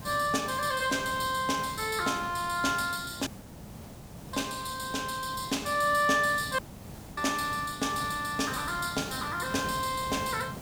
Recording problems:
hiss; SNR 14 dB
dropout; at 3.5 s for 1 s and at 6.5 s for 0.5 s

